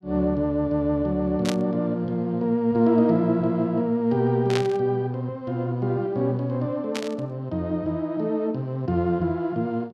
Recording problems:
burst of static; at 1.5 s, at 4.5 s and at 7 s; peak 0 dB vs average level

